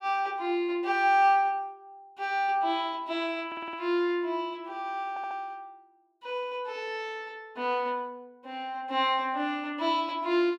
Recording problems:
stutter; at 3.5 s and at 5 s

